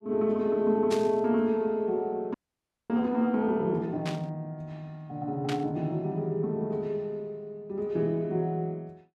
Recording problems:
burst of static; at 1 s, at 4 s and at 5.5 s; peak -3 dB vs average level
frozen audio; at 2.5 s for 0.5 s

